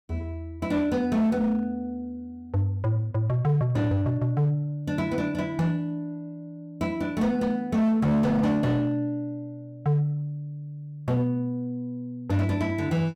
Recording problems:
distortion; hard clipping, signal-to-distortion ratio 10 dB

